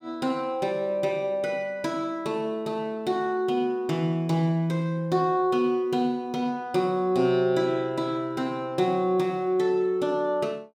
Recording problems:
none

